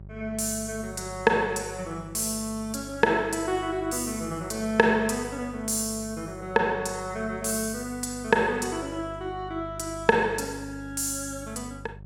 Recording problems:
hum; 50 Hz, harmonics up to 600 Hz, SNR 16 dB

